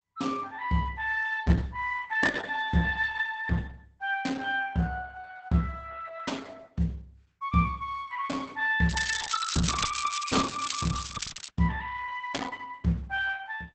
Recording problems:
lossy compression; Opus, log-spectral distance 6 dB, nothing above 8 kHz
crackle; from 9 to 11 s; loose cable, SNR 10 dB

